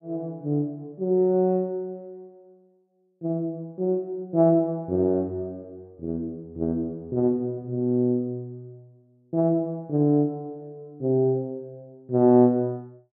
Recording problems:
none

